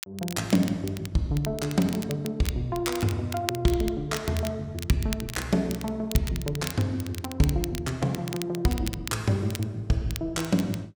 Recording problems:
crackling; vinyl, SNR 11 dB

